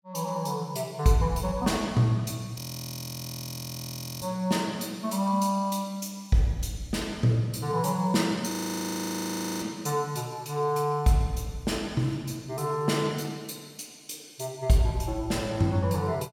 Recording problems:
audio freezing; at 2.5 s for 1.5 s and at 8.5 s for 1 s

